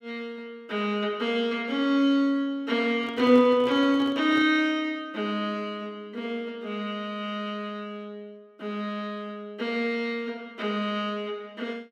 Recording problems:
microphone handling noise; from 3 to 4.5 s; peak -9 dB vs average level

